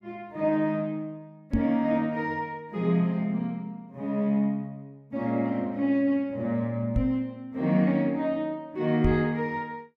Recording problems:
microphone thump; at 1.5 s, at 7 s and at 9 s; peak +5 dB vs average level

